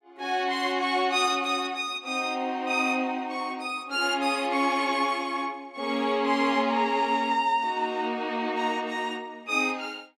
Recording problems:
none

